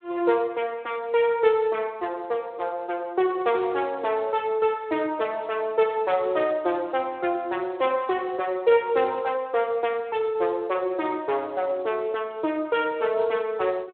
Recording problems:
phone line; 320 Hz to 3.7 kHz, Speex

